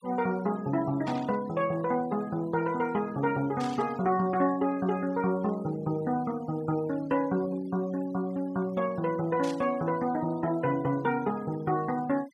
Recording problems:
denoising artefacts; signal-to-artefact ratio 22 dB
burst of static; at 1 s, at 3.5 s and at 9.5 s; peak -10 dB vs average level

